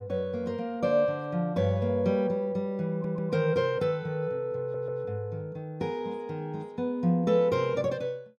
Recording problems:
audio stuttering; at 3 s and at 4.5 s

